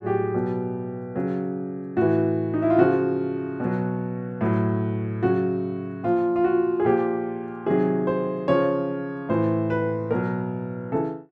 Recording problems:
none

